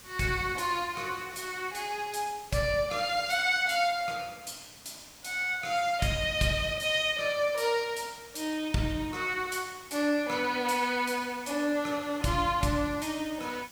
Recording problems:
hiss; slope -1 dB per octave, SNR 20 dB

